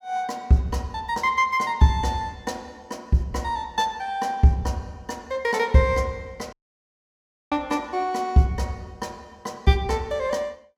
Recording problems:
dropout; at 6.5 s for 1 s

